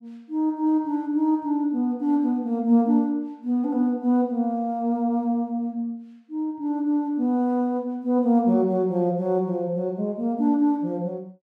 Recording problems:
none

